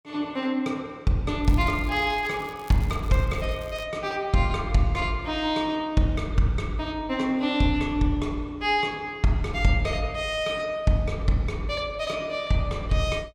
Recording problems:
crackle; from 1.5 to 4 s; loose cable, SNR 24 dB

